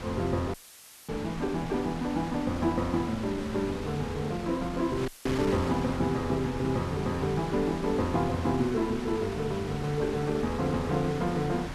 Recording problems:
wind on the microphone; below 1.5 kHz, SNR 9 dB
audio cutting out; at 0.5 s for 0.5 s and at 5 s; filled with static

